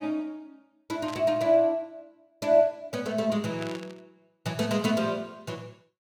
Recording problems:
burst of static; at 1 s and at 3.5 s; peak -10 dB vs average level

